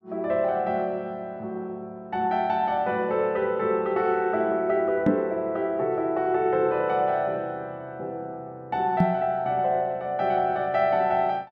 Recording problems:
microphone bump; at 5 s and at 9 s; peak +8 dB vs average level

